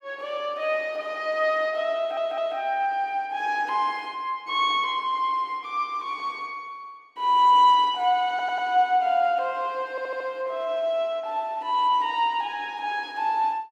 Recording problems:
stutter; at 2 s, at 8.5 s and at 10 s

